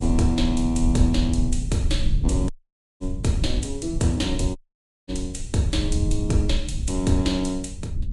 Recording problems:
codec artefacts; Vorbis, log-spectral distance 2 dB, nothing above 10.4 kHz
rumble; below 86 Hz, SNR 3 dB
dropout; at 2.5 s for 0.5 s and at 4.5 s for 0.5 s

